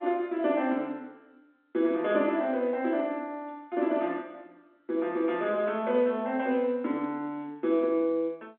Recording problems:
phone line; 220 Hz to 3.6 kHz, G.711

